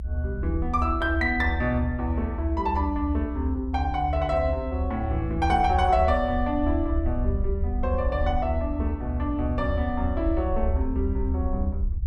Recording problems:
low-frequency rumble; below 76 Hz, SNR 2 dB

